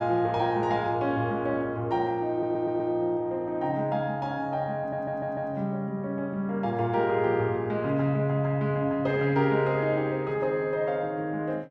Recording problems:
audio stuttering; at 2.5 s and at 5 s

